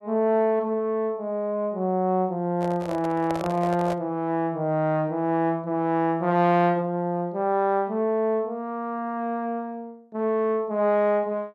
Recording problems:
microphone handling noise; from 2.5 to 4 s; peak -4 dB vs average level

